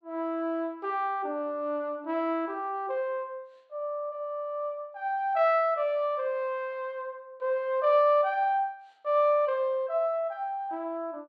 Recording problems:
none

